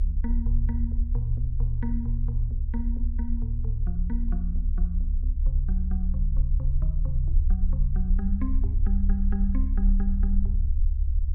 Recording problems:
rumble; below 68 Hz, strongest tone 32 Hz, SNR -6 dB

